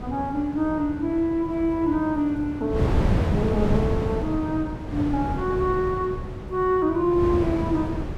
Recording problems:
wind on the microphone; below 300 Hz, SNR 4 dB

